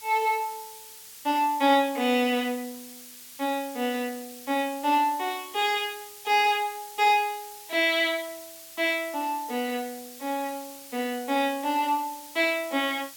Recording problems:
hiss; slope +3 dB per octave, SNR 16 dB

